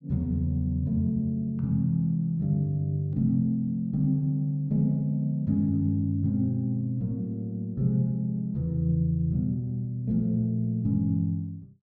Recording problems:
none

